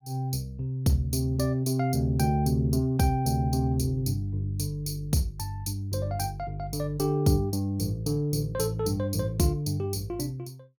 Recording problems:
none

